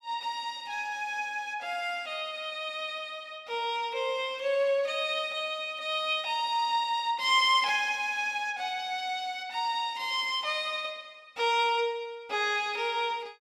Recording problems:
none

